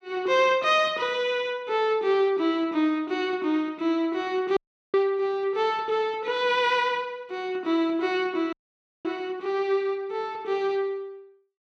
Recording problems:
dropout; at 4.5 s and at 8.5 s for 0.5 s

